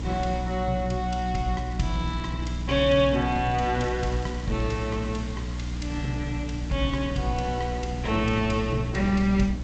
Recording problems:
codec artefacts; G.722, log-spectral distance 3 dB, nothing above 7.8 kHz
hum; 60 Hz, harmonics up to 300 Hz, SNR 6 dB
background hiss; slope -2 dB per octave, SNR 20 dB
wind noise; below 210 Hz, SNR 15 dB
crackle; from 1.5 to 4.5 s; loose cable, SNR 27 dB

